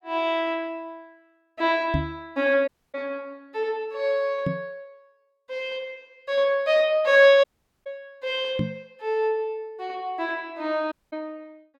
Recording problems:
microphone thump; at 2 s, at 4.5 s and at 8.5 s; peak +3 dB vs average level
dropout; at 2.5 s, at 7.5 s and at 11 s

